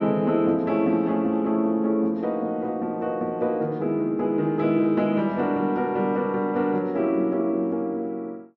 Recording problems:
treble cut off; nothing above 8 kHz

